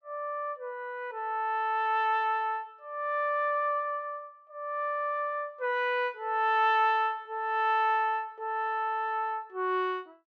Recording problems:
none

